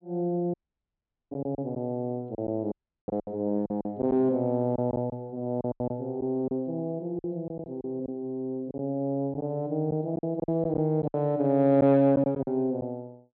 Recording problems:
low-pass filter; nothing above 4.3 kHz
lost packets; 9% of the sound replaced, filled with silence
audio cutting out; at 0.5 s for 1 s and at 2.5 s

